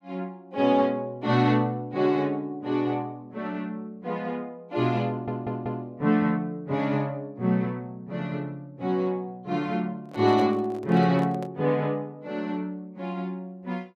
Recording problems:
stutter; at 5 s
microphone handling noise; from 10 to 11 s; peak -6 dB vs average level

